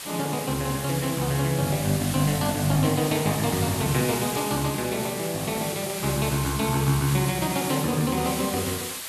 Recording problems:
background hiss; slope +1 dB per octave, SNR 6 dB

